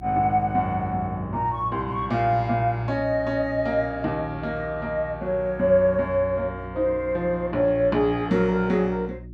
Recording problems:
electrical hum; 60 Hz, harmonics up to 360 Hz, SNR 17 dB

